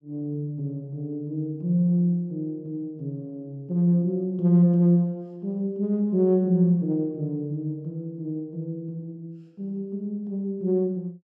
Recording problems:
none

